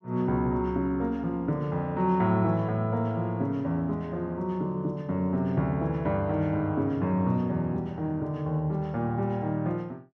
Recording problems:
none

